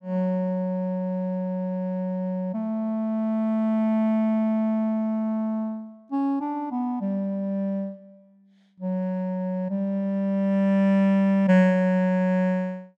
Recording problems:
none

